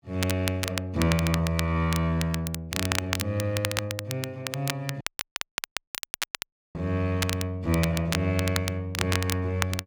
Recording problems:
crackle; vinyl, SNR 5 dB
dropout; at 5 s for 1.5 s

